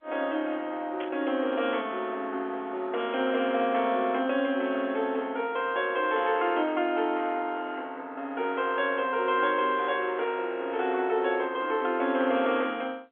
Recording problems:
telephone audio; 240 Hz to 3.5 kHz, G.711
static burst; at 1 s; peak -10 dB vs average level

